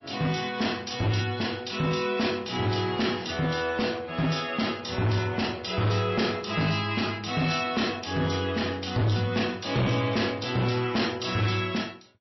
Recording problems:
lossy compression; MP3, then MP3, log-spectral distance 7 dB, nothing above 5.7 kHz
distortion; hard clipping, signal-to-distortion ratio 10 dB

